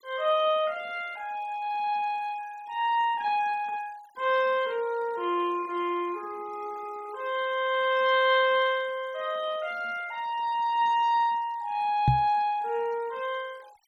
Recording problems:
noise reduction artefacts; signal-to-artefact ratio 24 dB
microphone thump; at 12 s; peak +7 dB vs average level

